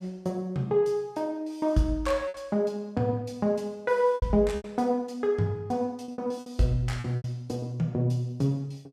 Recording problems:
packet loss; 7% of the sound replaced, filled with repeated pitch periods

